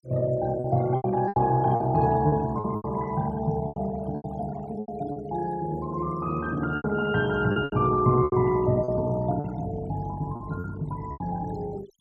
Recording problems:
denoising artefacts; signal-to-artefact ratio 21 dB
packet loss; 10% of the sound replaced, filled with repeated pitch periods

